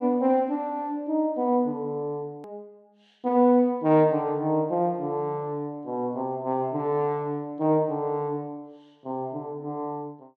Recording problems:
click at an edit; at 2.5 s

